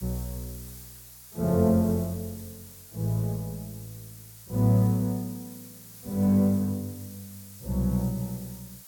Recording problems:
background hiss; slope +1 dB per octave, SNR 18 dB

